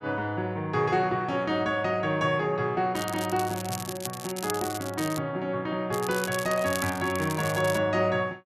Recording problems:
crackling; from 3 to 5 s and from 6 to 8 s; loose cable, SNR 10 dB

